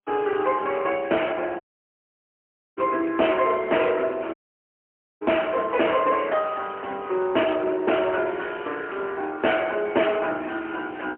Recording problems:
telephone audio; 240 Hz to 3.1 kHz, AMR-NB, then MP3
distortion; soft clipping, signal-to-distortion ratio 7 dB
audio cutting out; at 1.5 s for 1 s and at 4.5 s for 1 s

